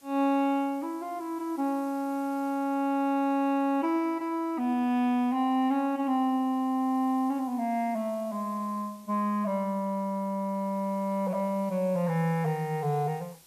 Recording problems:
hiss; SNR 27 dB

